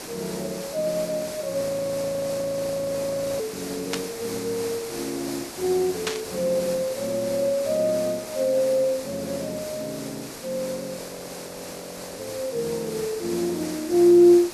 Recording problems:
hiss; SNR 11 dB
audio freezing; at 1.5 s for 2 s and at 11 s for 1 s
static burst; at 4 s and at 6 s; peak +2 dB vs average level

